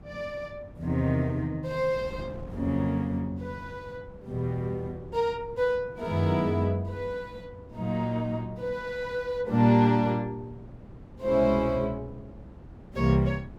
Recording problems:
wind noise; below 290 Hz, SNR 19 dB

